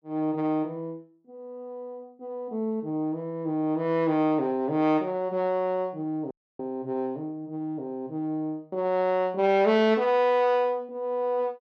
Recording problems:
dropout; at 6.5 s

